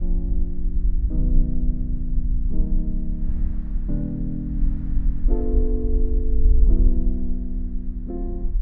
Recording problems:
low-frequency rumble; below 48 Hz, SNR -6 dB
wind on the microphone; below 320 Hz, SNR 23 dB

